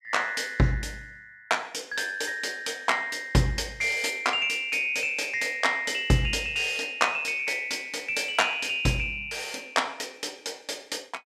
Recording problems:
none

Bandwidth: 15 kHz